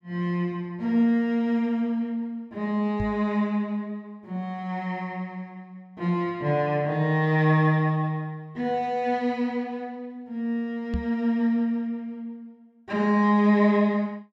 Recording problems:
microphone bump; at 3 s and at 11 s; peak 0 dB vs average level

